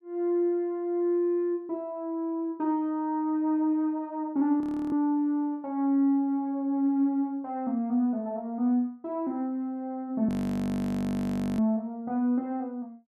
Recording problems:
frozen audio; at 4.5 s and at 10 s for 1.5 s

